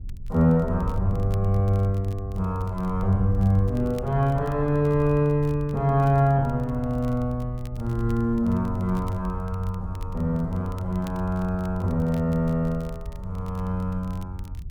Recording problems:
wind noise; below 82 Hz, SNR 11 dB
crackling; vinyl, SNR 30 dB

